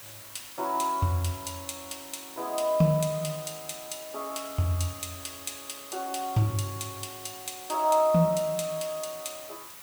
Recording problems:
background hiss; slope 0 dB per octave, SNR 13 dB

